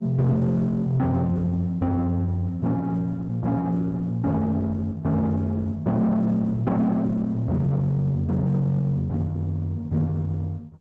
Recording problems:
lossy compression; Opus, log-spectral distance 2 dB
distorted audio; soft clipping, signal-to-distortion ratio 10 dB

